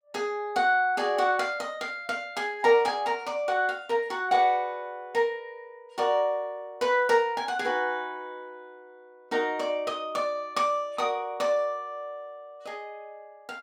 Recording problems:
none

